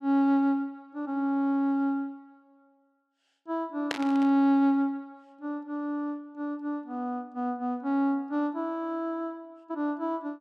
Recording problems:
burst of static; at 4 s; peak +2 dB vs average level

